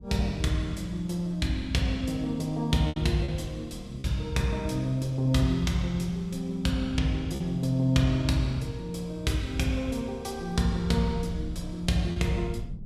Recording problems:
wind on the microphone; below 130 Hz, SNR 17 dB
packet loss; 1.9% of the sound replaced, filled with repeated pitch periods

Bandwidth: 14.5 kHz